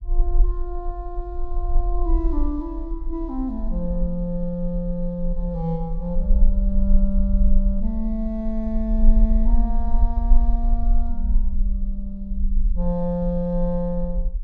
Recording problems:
low-frequency rumble; below 42 Hz, strongest tone 20 Hz, SNR -3 dB

